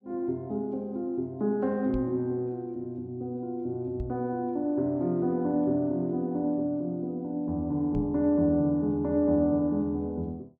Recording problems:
knock on the microphone; at 2 s, at 4 s and at 8 s; peak -1 dB vs average level

